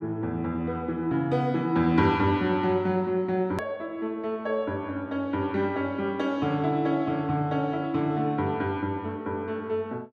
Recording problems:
edit click; at 3.5 s

